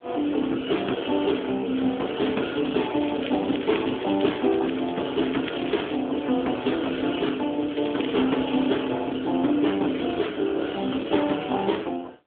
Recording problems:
telephone audio; 220 Hz to 3.5 kHz, AMR-NB
crackle; from 3 to 6 s and at 7.5 s; loose cable, SNR 13 dB

